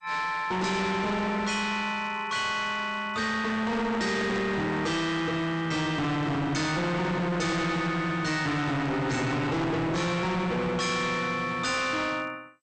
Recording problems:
lossy codec; MP2, log-spectral distance 2 dB, nothing above 8.5 kHz
distortion; hard clipping, signal-to-distortion ratio 6 dB
microphone handling noise; from 3.5 to 5 s; peak -2 dB vs average level

